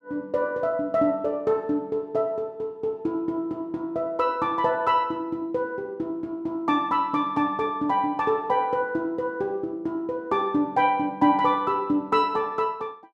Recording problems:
none

